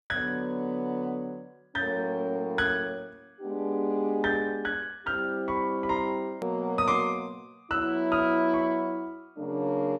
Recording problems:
edit click; at 6.5 s

